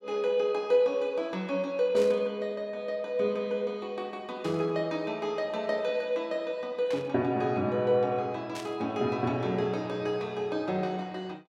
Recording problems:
static burst; 4 times, first at 2 s; peak -8 dB vs average level

